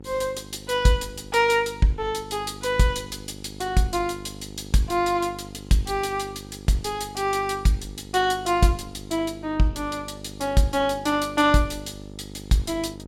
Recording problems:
hum; 50 Hz, harmonics up to 950 Hz, SNR 16 dB

